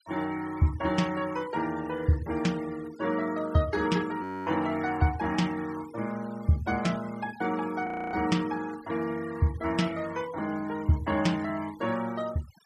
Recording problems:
noise reduction artefacts; signal-to-artefact ratio 18 dB
audio freezing; at 4 s and at 8 s

